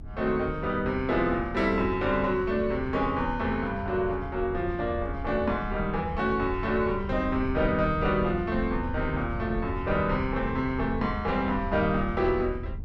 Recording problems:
low-frequency rumble; below 88 Hz, SNR 10 dB

